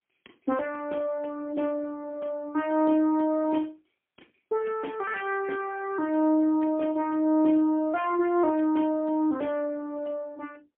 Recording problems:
phone line; 220 Hz to 2.3 kHz, AMR-NB, then MP3

